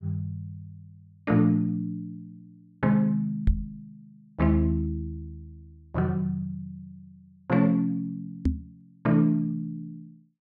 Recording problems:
knock on the microphone; at 3.5 s and at 8.5 s; peak +6 dB vs average level

